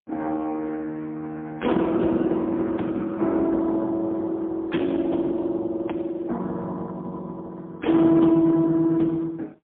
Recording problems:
phone line; 190 Hz to 3.6 kHz, AMR-NB, then MP3

